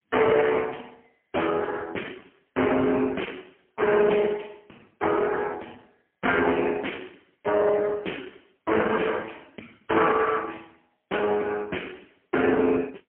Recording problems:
phone line; 260 Hz to 3.1 kHz, AMR-NB, then MP3
distortion; hard clipping, signal-to-distortion ratio 14 dB

